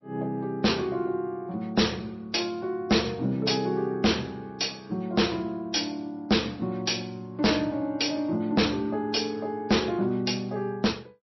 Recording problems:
codec artefacts; MP3, then MP3, log-spectral distance 5 dB, nothing above 5.8 kHz
distorted audio; hard clipping, signal-to-distortion ratio 7 dB

